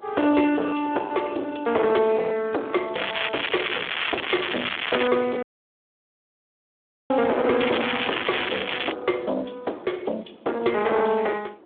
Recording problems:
phone line; 260 Hz to 3.5 kHz, Speex
distorted audio; soft clipping, signal-to-distortion ratio 9 dB
wind on the microphone; below 680 Hz, SNR 21 dB
crackle; from 3 to 5 s and from 7.5 to 9 s; loose cable, SNR 1 dB
dropout; at 5.5 s for 1.5 s

